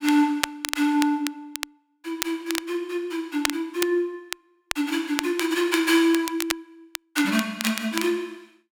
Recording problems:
crackle; vinyl, SNR 8 dB

